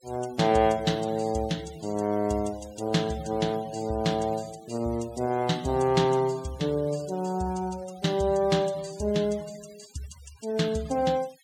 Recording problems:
noise reduction artefacts; signal-to-artefact ratio 21 dB

